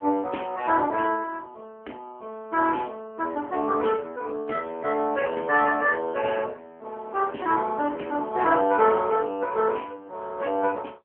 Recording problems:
telephone audio; 240 Hz to 3.3 kHz, AMR-NB

